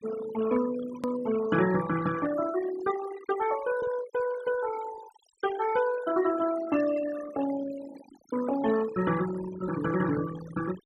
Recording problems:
denoising artefacts; signal-to-artefact ratio 11 dB
edit click; at 1 s

